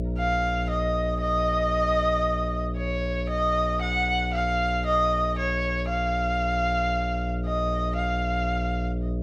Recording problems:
hum; 60 Hz, harmonics up to 660 Hz, SNR 4 dB

